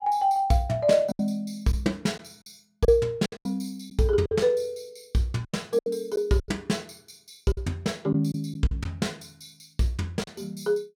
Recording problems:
lost packets; 8% of the sound replaced, filled with silence

